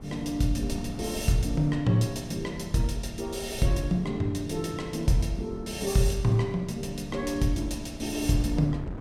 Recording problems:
wind on the microphone; below 200 Hz, SNR 13 dB

